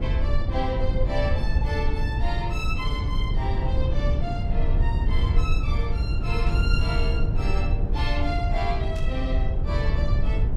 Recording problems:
low-frequency rumble; below 84 Hz, SNR -6 dB
burst of static; at 6.5 s and at 9 s; peak -10 dB vs average level

